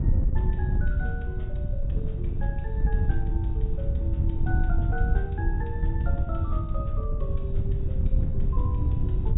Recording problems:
low-pass filter; nothing above 4 kHz
wind on the microphone; below 92 Hz, SNR -11 dB

